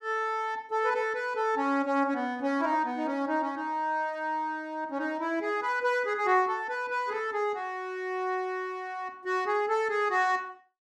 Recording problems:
none

